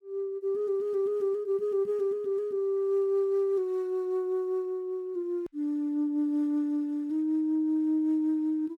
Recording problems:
hard cut with a click; at 5.5 s

